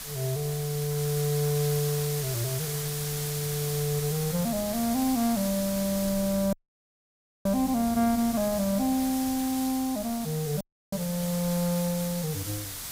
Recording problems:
hiss; slope +2 dB per octave, SNR 6 dB
wind on the microphone; below 260 Hz, SNR 20 dB
audio cutting out; at 6.5 s for 1 s and at 11 s

